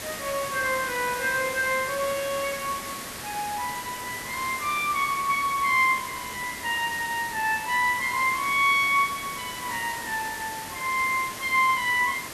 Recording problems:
hiss; slope -2 dB per octave, SNR 9 dB

